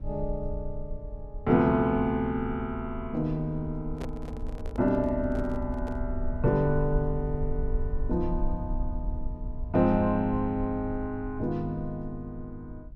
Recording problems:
low-frequency rumble; below 58 Hz, strongest tone 22 Hz, SNR 9 dB
microphone handling noise; from 4 to 6 s; peak -7 dB vs average level

